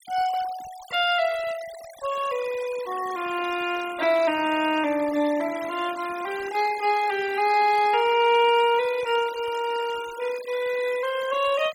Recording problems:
denoising artefacts; signal-to-artefact ratio 16 dB

